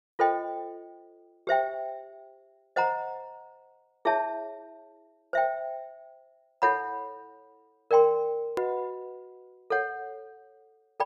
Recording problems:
click at an edit; at 8.5 s

